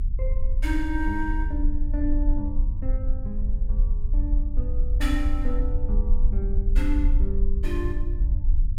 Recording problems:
low-frequency rumble; below 50 Hz, SNR -6 dB

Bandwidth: 16.5 kHz